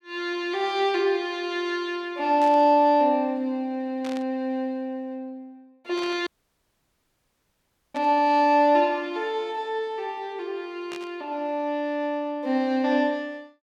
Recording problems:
static burst; 5 times, first at 2.5 s; peak -11 dB vs average level
audio cutting out; at 6.5 s for 1.5 s

